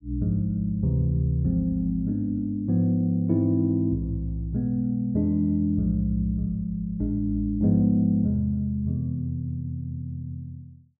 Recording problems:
none

